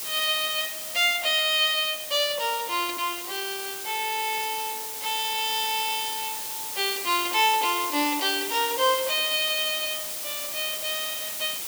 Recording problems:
hiss; SNR 5 dB

